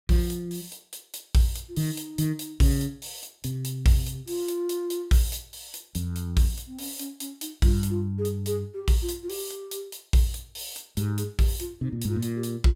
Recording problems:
none

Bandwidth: 16 kHz